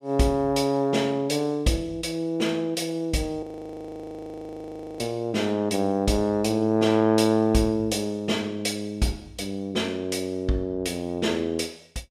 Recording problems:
frozen audio; at 3.5 s for 1.5 s

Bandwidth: 14.5 kHz